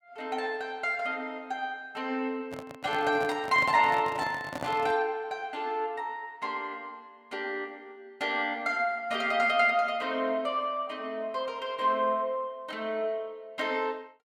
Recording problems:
handling noise; from 2.5 to 5 s; peak -3 dB vs average level

